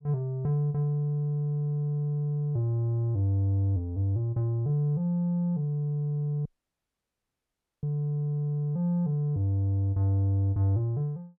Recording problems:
dropout; at 6.5 s for 1.5 s

